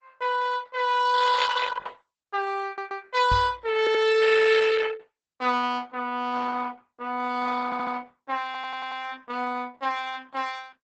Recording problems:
codec artefacts; Opus, log-spectral distance 4 dB, nothing above 8 kHz
stutter; 4 times, first at 2.5 s
microphone bump; at 3.5 s; peak -1 dB vs average level

